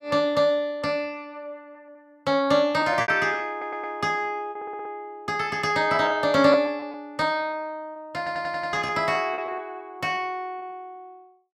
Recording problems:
packet loss; 6% of the sound replaced, filled with repeated pitch periods
stutter; at 3.5 s, at 4.5 s and at 8 s

